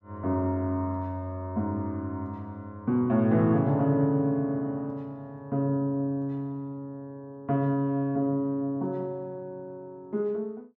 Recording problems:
none

